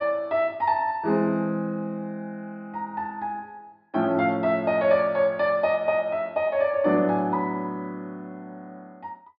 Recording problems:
treble cut off; nothing above 5.5 kHz

